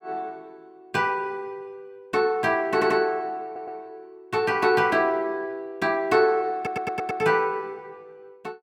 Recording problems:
stutter; at 2.5 s, at 3.5 s and at 6.5 s

